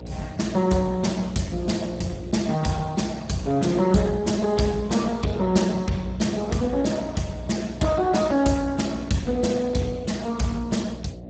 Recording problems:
lossy codec; Speex, log-spectral distance 4 dB, nothing above 7.8 kHz
hum; 60 Hz, harmonics up to 720 Hz, SNR 14 dB

